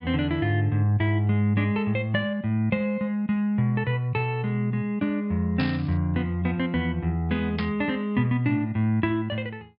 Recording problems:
treble cut off; nothing above 5.5 kHz
static burst; at 5.5 s and at 7.5 s; peak -4 dB vs average level

